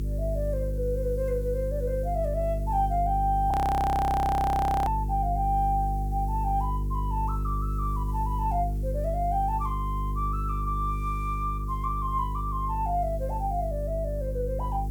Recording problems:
mains hum; 50 Hz, harmonics up to 450 Hz, SNR 2 dB
background hiss; slope 0 dB per octave, SNR 26 dB
frozen audio; at 3.5 s for 1.5 s

